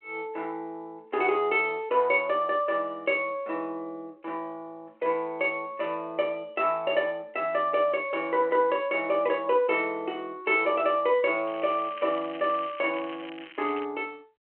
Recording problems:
phone line; 260 Hz to 3.3 kHz, G.726
crackling; from 11 to 14 s; loose cable, SNR 18 dB

